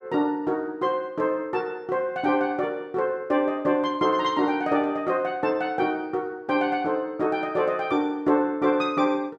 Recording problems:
none

